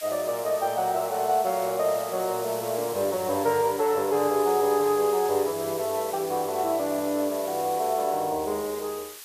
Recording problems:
hiss; slope +3 dB per octave, SNR 13 dB

